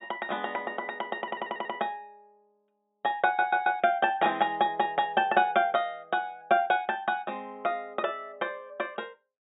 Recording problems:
low-pass filter; nothing above 4 kHz
stutter; at 1 s and at 3.5 s

